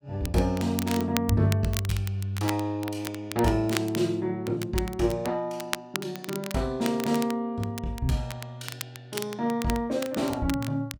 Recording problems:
crackle; vinyl, SNR 10 dB

